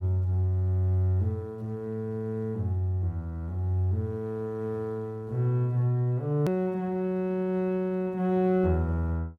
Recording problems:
edit click; at 6.5 s

